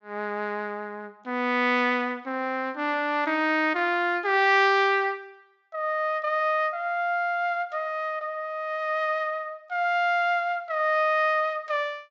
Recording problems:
treble missing; nothing above 8 kHz

